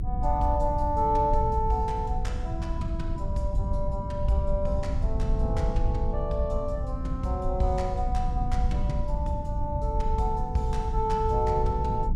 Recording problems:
low-frequency rumble; below 88 Hz, SNR 1 dB

